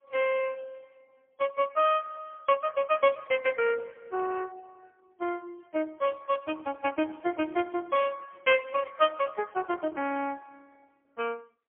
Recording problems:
phone line; 280 Hz to 3.3 kHz, AMR-NB, then MP3

